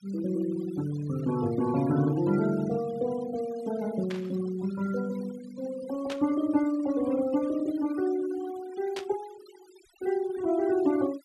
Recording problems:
noise reduction artefacts; signal-to-artefact ratio 18 dB
burst of static; at 4 s, at 6 s and at 9 s; peak -5 dB vs average level

